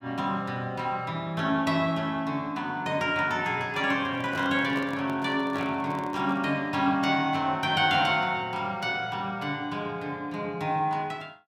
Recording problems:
microphone handling noise; from 4 to 6.5 s; peak -7 dB vs average level

